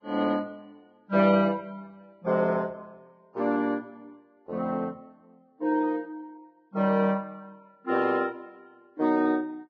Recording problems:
codec artefacts; Vorbis, log-spectral distance 2 dB, nothing above 6.2 kHz

